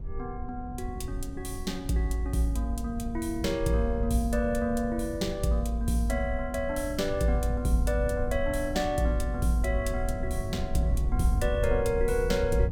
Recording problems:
wind on the microphone; below 94 Hz, SNR 7 dB

